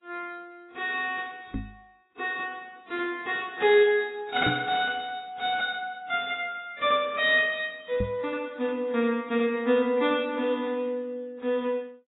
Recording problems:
codec artefacts; AAC, then AAC, log-spectral distance 3 dB, nothing above 3.8 kHz
microphone thump; at 1.5 s, at 4.5 s and at 8 s; peak 0 dB vs average level

